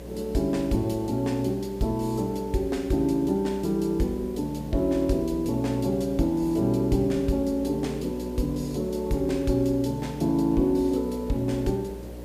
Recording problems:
hum; 60 Hz, harmonics up to 600 Hz, SNR 15 dB
background hiss; SNR 20 dB

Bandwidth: 15 kHz